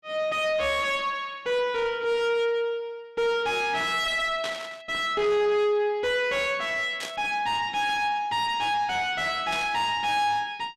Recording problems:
distorted audio; soft clipping, signal-to-distortion ratio 7 dB
static burst; at 4.5 s, at 7 s and at 9.5 s; peak -5 dB vs average level

